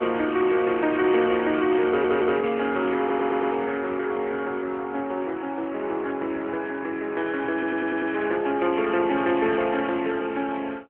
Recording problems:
telephone audio; 240 Hz to 3.2 kHz, AMR-NB
stutter; at 2 s, at 3 s and at 7.5 s

